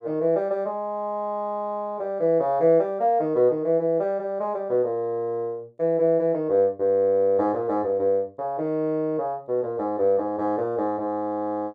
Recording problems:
none

